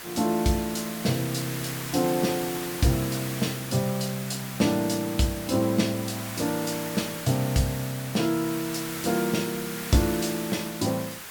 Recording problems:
background hiss; SNR 8 dB

